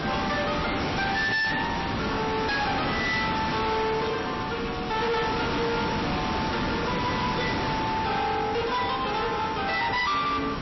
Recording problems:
lossy compression; MP3, log-spectral distance 13 dB, nothing above 5.7 kHz
distortion; hard clipping, signal-to-distortion ratio 6 dB
background hiss; slope -4 dB per octave, SNR 3 dB
handling noise; from 6 to 8 s; peak -5 dB vs average level

